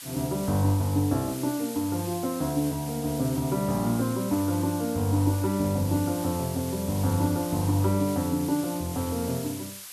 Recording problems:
hiss; slope +3 dB per octave, SNR 12 dB

